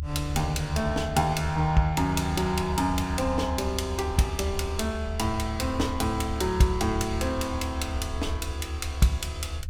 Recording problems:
rumble; below 80 Hz, strongest tone 72 Hz, SNR 7 dB

